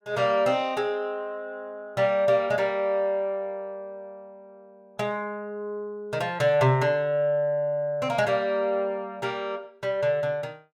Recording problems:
none

